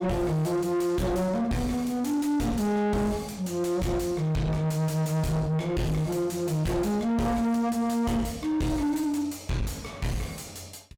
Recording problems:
distorted audio; soft clipping, signal-to-distortion ratio 7 dB

